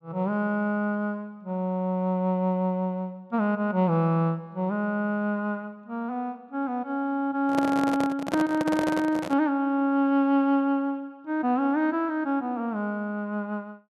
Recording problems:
microphone handling noise; from 7.5 to 9.5 s; peak +1 dB vs average level

